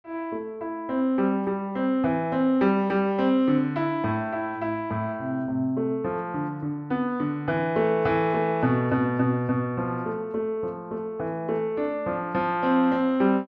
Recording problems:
none

